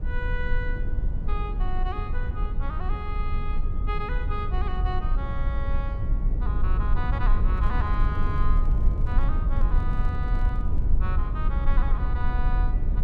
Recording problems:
low-frequency rumble; below 56 Hz, SNR -9 dB
microphone handling noise; from 7.5 to 11 s; peak -10 dB vs average level

